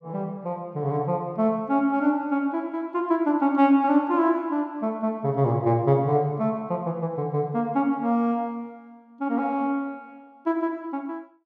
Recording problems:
none

